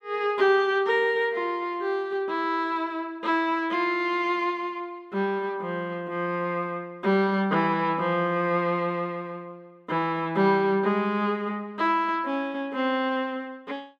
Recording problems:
none

